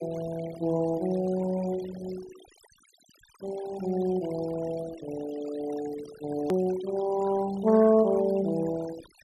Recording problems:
noise reduction artefacts; signal-to-artefact ratio 17 dB
hard cut with a click; at 6.5 s

